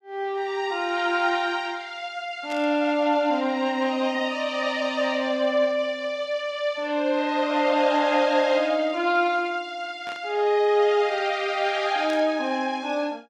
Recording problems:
static burst; at 2.5 s, at 10 s and at 12 s; peak -12 dB vs average level

